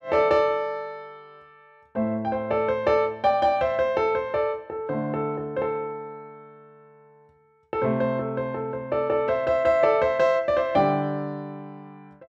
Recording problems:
none

